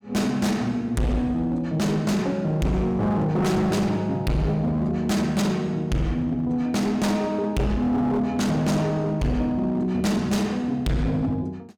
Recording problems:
distorted audio; hard clipping, signal-to-distortion ratio 7 dB

